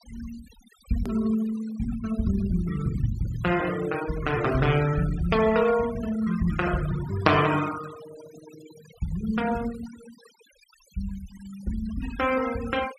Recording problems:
noise reduction artefacts; signal-to-artefact ratio 15 dB
edit click; at 1 s

